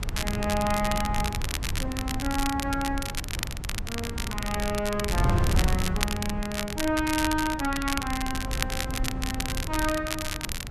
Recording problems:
wind on the microphone; below 130 Hz, SNR 2 dB
crackle; vinyl, SNR 3 dB

